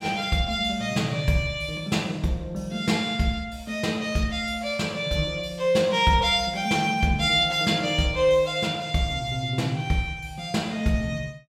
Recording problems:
none

